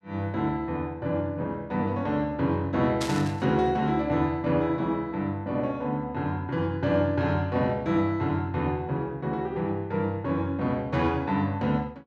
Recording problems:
burst of static; at 3 s; peak -1 dB vs average level

